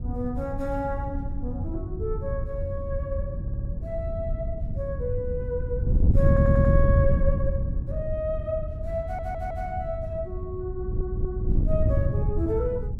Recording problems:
wind on the microphone; below 120 Hz, SNR -3 dB
stutter; 4 times, first at 3.5 s

